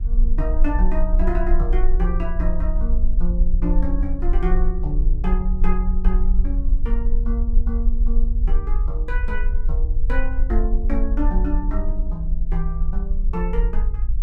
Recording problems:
low-frequency rumble; below 42 Hz, strongest tone 22 Hz, SNR -6 dB

